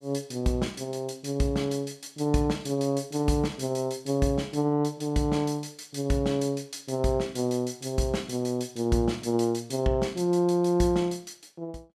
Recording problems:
none

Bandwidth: 14.5 kHz